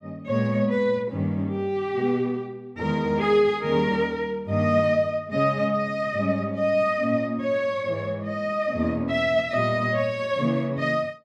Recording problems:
none

